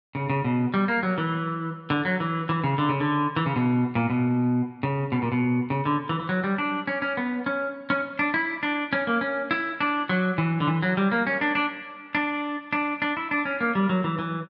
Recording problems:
none

